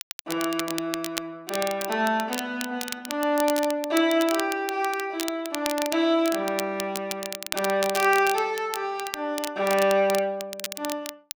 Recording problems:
crackle; vinyl, SNR 9 dB

